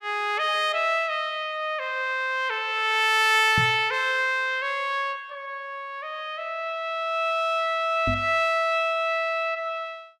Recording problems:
microphone bump; at 3.5 s and at 8 s; peak -1 dB vs average level

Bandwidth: 15.5 kHz